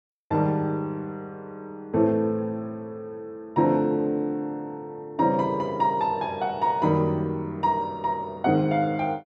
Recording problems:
none

